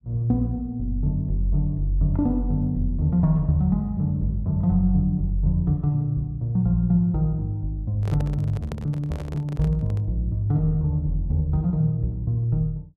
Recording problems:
handling noise; from 8 to 10 s; peak -7 dB vs average level

